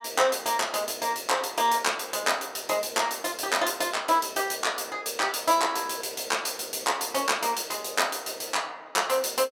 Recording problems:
none

